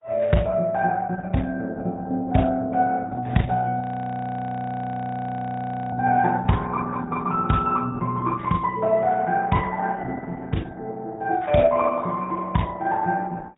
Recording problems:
low-pass filter; nothing above 3.8 kHz
lossy codec; Opus, log-spectral distance 3 dB
frozen audio; at 4 s for 2 s

